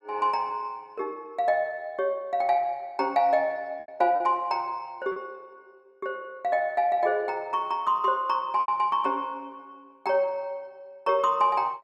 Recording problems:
packet loss; 2% of the sound replaced, filled with repeated pitch periods

